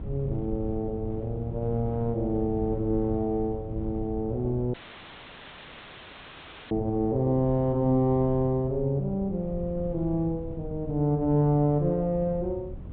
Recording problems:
treble cut off; nothing above 4 kHz
hum; 50 Hz, harmonics up to 850 Hz, SNR 23 dB
wind noise; below 120 Hz, SNR 12 dB
audio cutting out; at 4.5 s for 2 s

